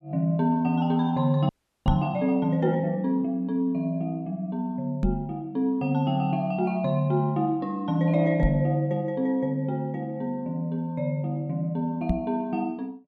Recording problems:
frozen audio; at 1.5 s
microphone thump; 4 times, first at 2 s; peak +4 dB vs average level

